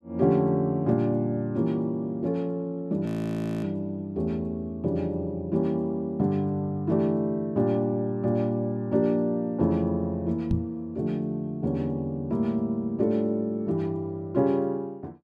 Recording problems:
frozen audio; at 3 s for 0.5 s
knock on the microphone; at 11 s; peak +5 dB vs average level

